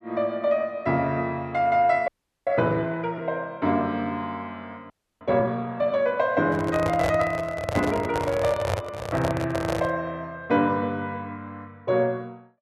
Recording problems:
audio freezing; at 2 s and at 5 s
handling noise; from 6.5 to 10 s; peak +2 dB vs average level

